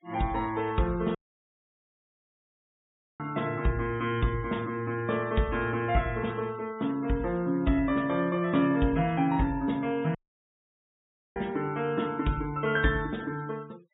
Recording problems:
treble cut off; nothing above 4 kHz
denoising artefacts; signal-to-artefact ratio 22 dB
dropout; at 1 s for 2 s and at 10 s for 1 s

